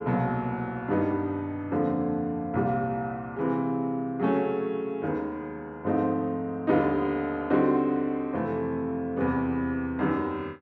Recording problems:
none

